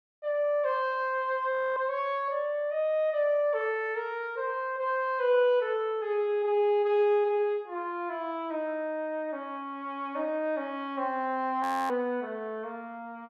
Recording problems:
frozen audio; at 1.5 s and at 12 s

